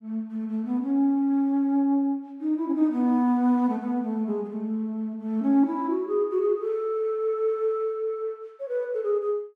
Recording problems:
none

